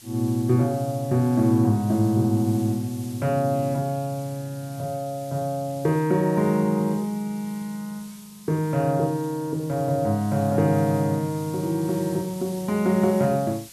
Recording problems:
hiss; slope +2 dB per octave, SNR 20 dB

